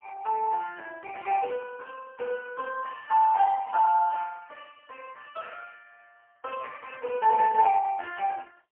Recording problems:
telephone audio; 280 Hz to 2.3 kHz, AMR-NB, then MP3

